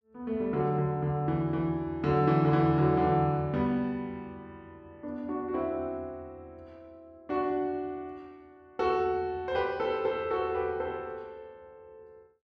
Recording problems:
none

